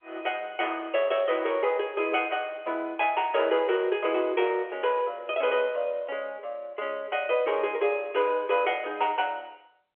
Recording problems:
telephone audio; 320 Hz to 3.4 kHz, G.711

